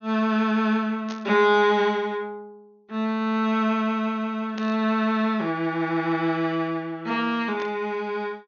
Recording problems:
treble cut off; nothing above 6.7 kHz
static burst; at 1 s, at 4.5 s and at 7.5 s; peak -10 dB vs average level

